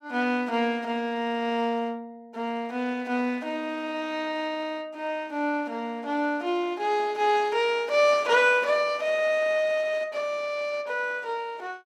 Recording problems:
none

